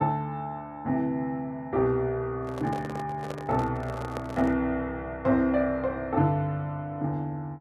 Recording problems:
handling noise; from 2.5 to 4.5 s; peak -4 dB vs average level

